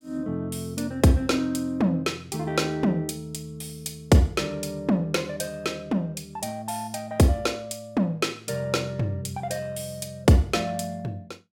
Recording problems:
none

